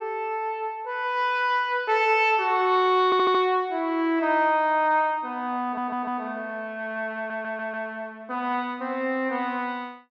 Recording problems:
audio stuttering; at 3 s, at 5.5 s and at 7 s

